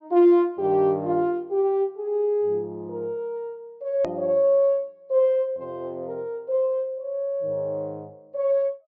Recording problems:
treble missing; nothing above 8 kHz
click at an edit; at 4 s

